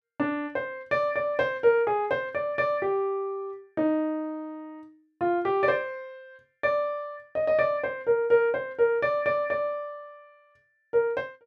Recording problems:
none

